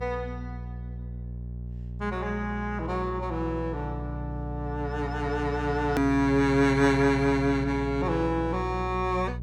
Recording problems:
electrical hum; 60 Hz, harmonics up to 420 Hz, SNR 9 dB
edit click; at 6 s

